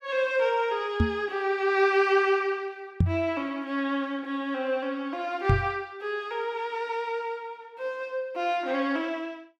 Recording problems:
microphone thump; at 1 s, at 3 s and at 5.5 s; peak +8 dB vs average level

